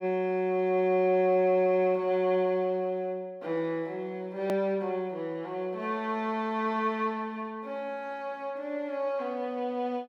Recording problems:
click at an edit; at 4.5 s

